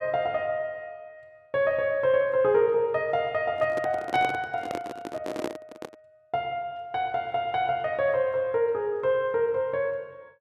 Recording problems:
microphone handling noise; from 3.5 to 6 s; peak -1 dB vs average level

